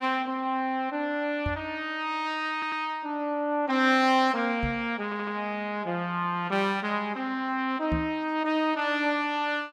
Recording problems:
microphone bump; at 1.5 s, at 4.5 s and at 8 s; peak +1 dB vs average level
audio stuttering; at 2.5 s and at 5 s

